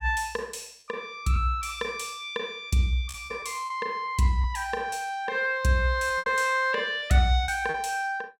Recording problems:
packet loss; 6% of the sound replaced, filled with repeated pitch periods

